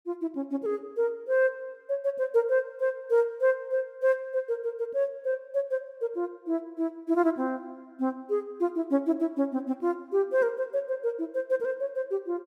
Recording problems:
none

